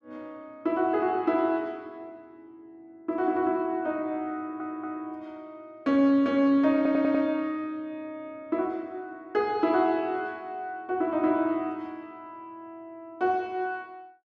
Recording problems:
audio stuttering; at 4.5 s and at 7 s

